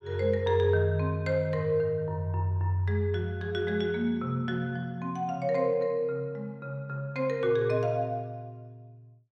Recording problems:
none

